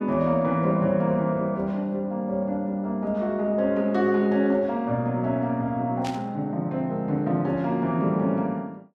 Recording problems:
static burst; at 6 s; peak -8 dB vs average level

